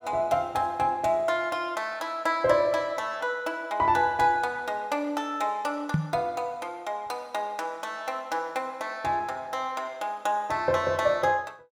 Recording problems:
microphone bump; at 6 s; peak +6 dB vs average level

